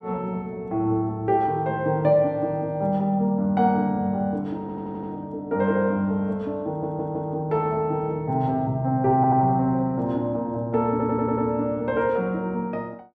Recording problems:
audio stuttering; 4 times, first at 4.5 s

